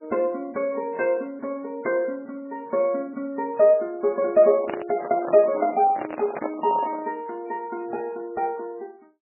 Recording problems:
codec artefacts; MP3, log-spectral distance 2 dB, nothing above 2.6 kHz
microphone handling noise; from 4.5 to 7 s; peak -1 dB vs average level

